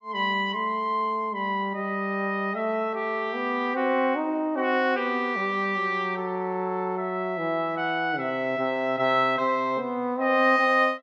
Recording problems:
none

